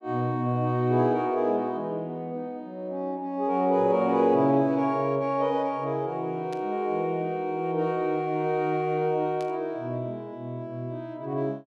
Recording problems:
burst of static; at 6.5 s and at 9.5 s; peak -15 dB vs average level

